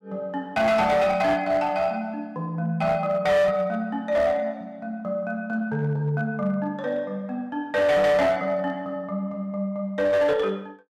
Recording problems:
distorted audio; hard clipping, uneven, signal-to-distortion ratio 11 dB

